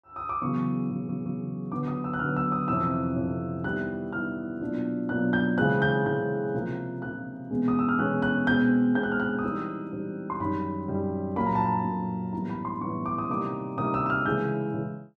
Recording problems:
stutter; at 1 s

